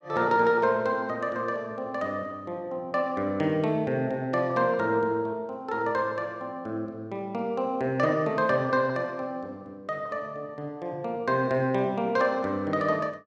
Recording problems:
none

